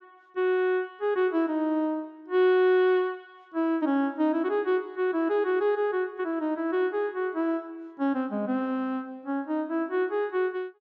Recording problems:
none

